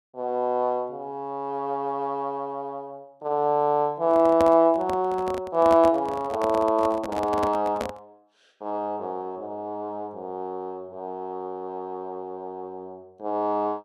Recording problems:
handling noise; from 4 to 8 s; peak +1 dB vs average level

